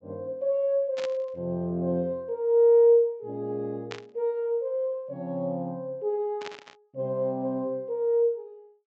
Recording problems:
treble cut off; nothing above 8 kHz
static burst; at 1 s, at 4 s and at 6.5 s; peak -7 dB vs average level

